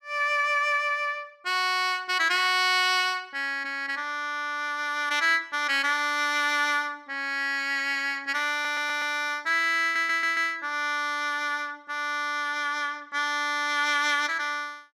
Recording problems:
audio stuttering; at 8.5 s and at 10 s

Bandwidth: 14.5 kHz